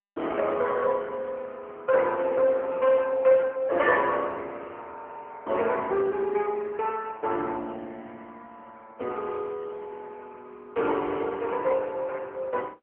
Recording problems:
phone line; 260 Hz to 3.1 kHz, AMR-NB

